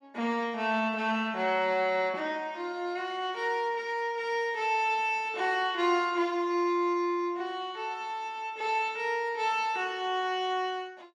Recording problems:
none

